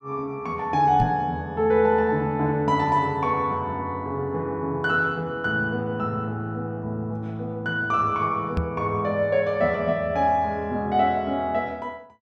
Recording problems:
microphone bump; at 1 s and at 8.5 s; peak +3 dB vs average level

